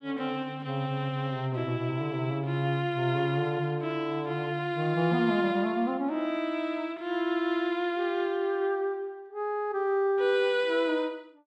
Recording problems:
none

